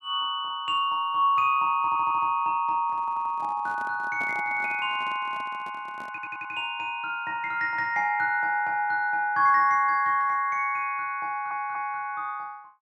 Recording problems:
stutter; 4 times, first at 2 s
microphone handling noise; from 3 to 6.5 s; peak -11 dB vs average level

